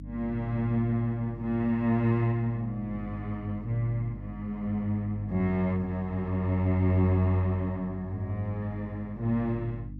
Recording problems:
hum; 50 Hz, harmonics up to 300 Hz, SNR 14 dB

